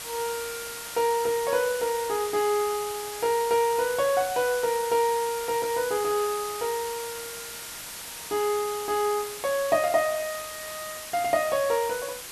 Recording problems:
hiss; slope 0 dB per octave, SNR 9 dB

